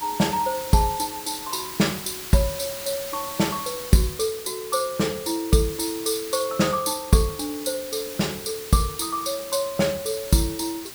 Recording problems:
hiss; slope 0 dB per octave, SNR 10 dB

